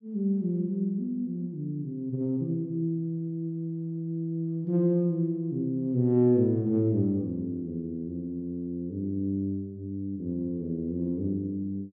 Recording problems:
none

